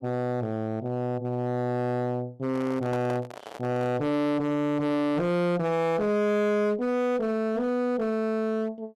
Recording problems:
distortion; hard clipping, signal-to-distortion ratio 7 dB
handling noise; from 2.5 to 4 s; peak -7 dB vs average level

